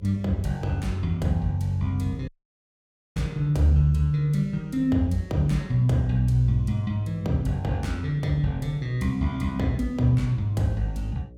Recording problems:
electrical hum; 60 Hz, harmonics up to 600 Hz, SNR 22 dB
dropout; at 2.5 s for 1 s

